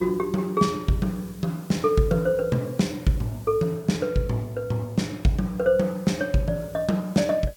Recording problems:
background hiss; slope +2 dB per octave, SNR 25 dB

